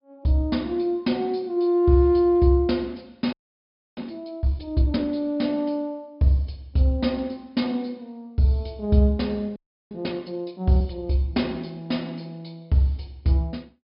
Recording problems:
treble missing; nothing above 5.5 kHz
frozen audio; at 3.5 s for 0.5 s and at 9.5 s

